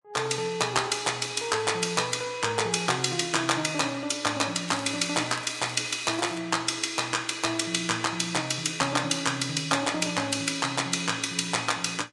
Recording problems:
lossy codec; Vorbis, log-spectral distance 5 dB, nothing above 10.4 kHz
crackling; from 4.5 to 6.5 s; loose cable, SNR 17 dB

